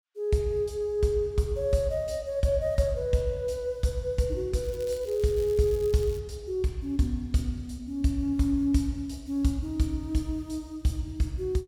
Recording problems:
crackling; from 4.5 to 6 s; loose cable, SNR 22 dB

